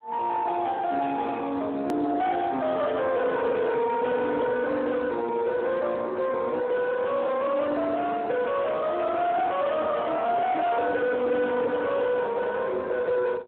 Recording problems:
phone line; 240 Hz to 2.8 kHz, Speex
distorted audio; soft clipping, signal-to-distortion ratio 6 dB
click at an edit; at 2 s

